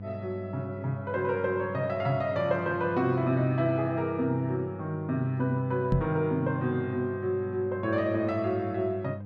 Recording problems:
hum; 50 Hz, harmonics up to 700 Hz, SNR 12 dB
microphone thump; at 6 s; peak +5 dB vs average level

